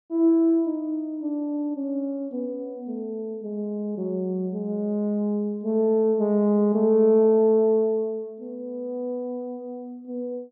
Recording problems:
none

